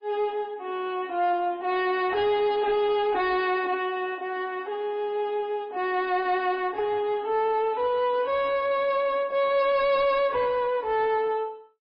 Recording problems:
lossy compression; AAC, then MP3, log-spectral distance 2 dB
distorted audio; soft clipping, signal-to-distortion ratio 11 dB

